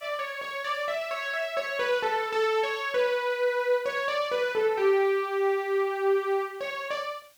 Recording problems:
background hiss; slope +2 dB per octave, SNR 29 dB

